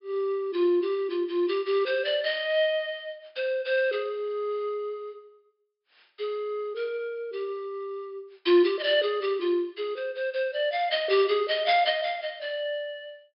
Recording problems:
low-pass filter; nothing above 5.5 kHz

